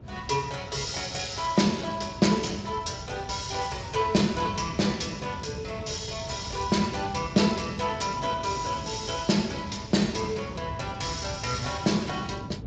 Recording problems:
codec artefacts; Speex, log-spectral distance 4 dB, nothing above 7.3 kHz
rumble; below 150 Hz, SNR 13 dB
wind on the microphone; below 330 Hz, SNR 17 dB

